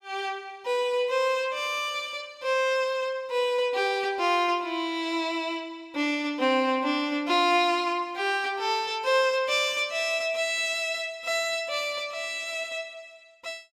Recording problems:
none

